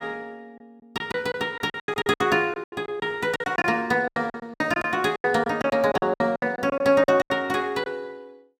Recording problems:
lost packets; 17% of the sound replaced, filled with silence

